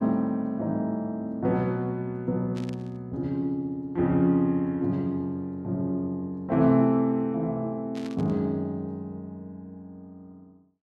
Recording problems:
static burst; at 2.5 s and at 8 s; peak -13 dB vs average level

